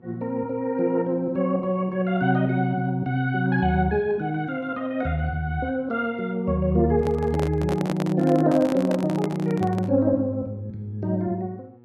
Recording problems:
hum; 60 Hz, harmonics up to 960 Hz, SNR 25 dB
handling noise; from 7 to 10 s; peak -2 dB vs average level

